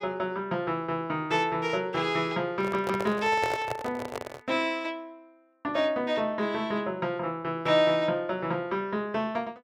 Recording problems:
microphone handling noise; from 2.5 to 4.5 s; peak 0 dB vs average level

